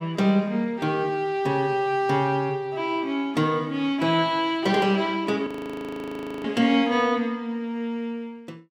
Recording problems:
audio freezing; at 5.5 s for 1 s

